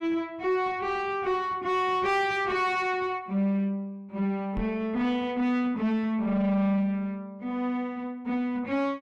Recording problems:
distorted audio; soft clipping, signal-to-distortion ratio 10 dB
microphone thump; at 4.5 s; peak -3 dB vs average level

